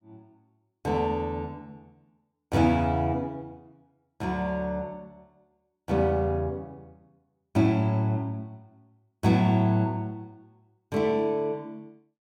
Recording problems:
none

